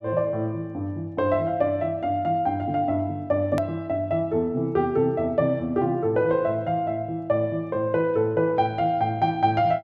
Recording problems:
click at an edit; at 3.5 s

